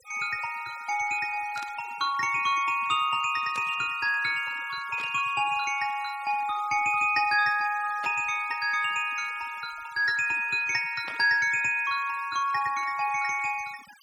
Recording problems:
noise reduction artefacts; signal-to-artefact ratio 20 dB
burst of static; 5 times, first at 1.5 s; peak -9 dB vs average level

